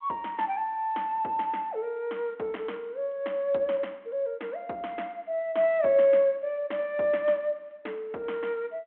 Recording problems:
phone line; 260 Hz to 3.6 kHz, G.726

